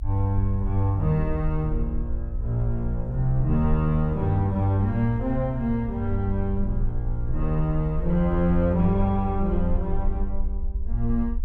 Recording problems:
rumble; below 54 Hz, strongest tone 20 Hz, SNR 6 dB

